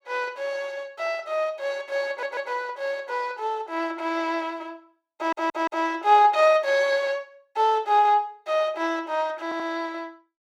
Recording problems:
stutter; at 2 s, at 5 s and at 9.5 s

